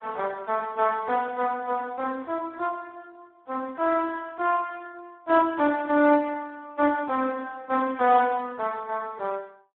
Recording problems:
telephone audio; 240 Hz to 2.3 kHz, Speex

